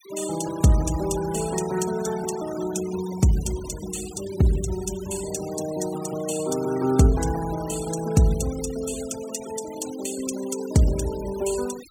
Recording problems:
noise reduction artefacts; signal-to-artefact ratio 14 dB

